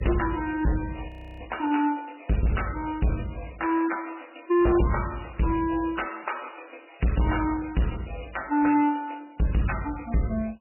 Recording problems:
lossy codec; MP3, log-spectral distance 12 dB, nothing above 2.9 kHz
distortion; hard clipping, signal-to-distortion ratio 8 dB
audio freezing; at 1 s

